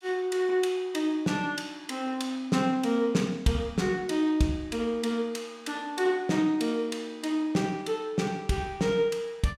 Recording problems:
none

